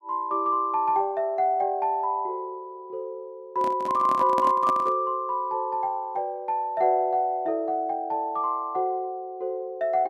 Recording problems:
handling noise; from 3.5 to 5 s; peak -2 dB vs average level

